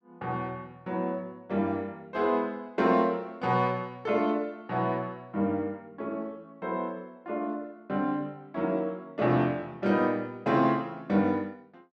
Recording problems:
none

